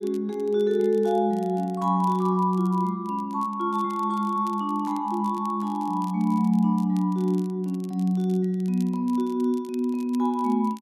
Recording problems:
crackling; vinyl, SNR 28 dB

